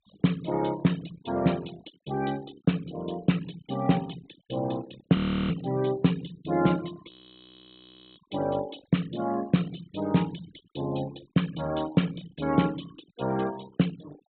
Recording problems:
treble missing; nothing above 4 kHz
noise reduction artefacts; signal-to-artefact ratio 20 dB
frozen audio; at 5 s and at 7 s for 1 s

